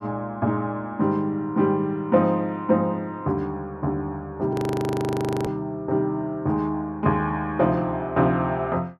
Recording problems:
frozen audio; at 4.5 s for 1 s

